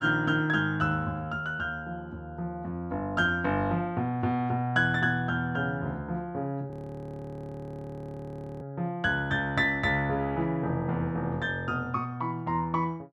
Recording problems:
frozen audio; at 6.5 s for 2 s

